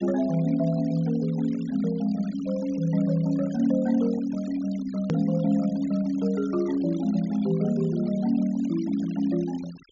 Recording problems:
treble cut off; nothing above 7.1 kHz
denoising artefacts; signal-to-artefact ratio 21 dB
click at an edit; at 5 s

